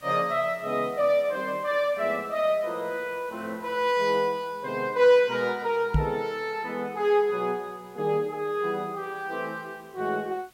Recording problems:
hiss; SNR 28 dB
microphone bump; at 6 s; peak +6 dB vs average level

